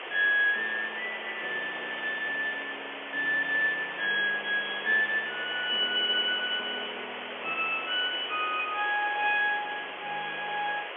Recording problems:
phone line; 320 Hz to 3.3 kHz, G.711
background hiss; SNR 9 dB

